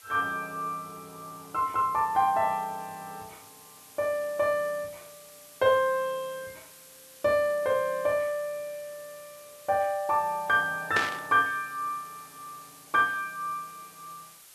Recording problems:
hiss; slope +1 dB per octave, SNR 21 dB
burst of static; at 11 s; peak +3 dB vs average level

